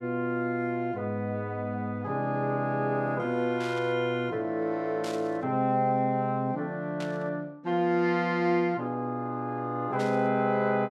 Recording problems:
static burst; 4 times, first at 3.5 s; peak -8 dB vs average level

